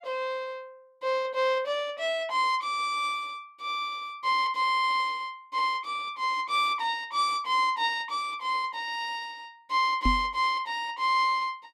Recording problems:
microphone bump; at 10 s; peak +3 dB vs average level

